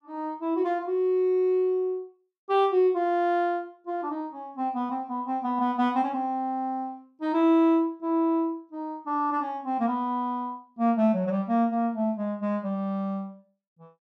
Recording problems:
none

